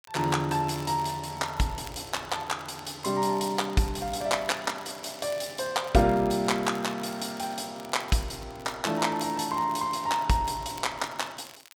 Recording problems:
crackling; vinyl, SNR 21 dB

